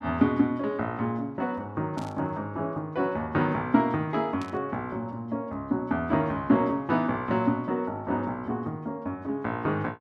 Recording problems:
static burst; at 2 s and at 4.5 s; peak -11 dB vs average level

